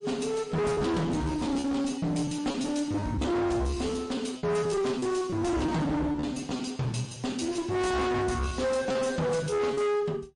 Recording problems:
lossy codec; MP3, log-spectral distance 3 dB, nothing above 10.1 kHz
distortion; hard clipping, uneven, signal-to-distortion ratio 7 dB
packet loss; 16% of the sound replaced, filled with repeated pitch periods

